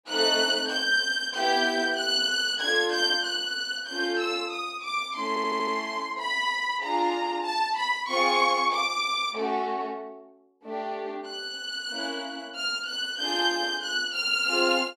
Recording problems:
audio stuttering; at 5.5 s

